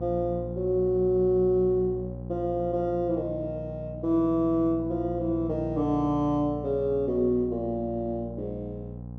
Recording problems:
electrical hum; 60 Hz, harmonics up to 840 Hz, SNR 11 dB

